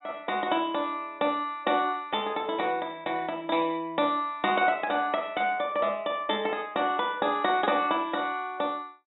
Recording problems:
treble cut off; nothing above 3.9 kHz

